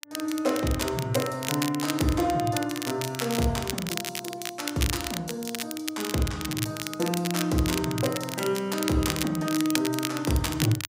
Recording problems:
crackling; vinyl, SNR 5 dB

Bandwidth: 15.5 kHz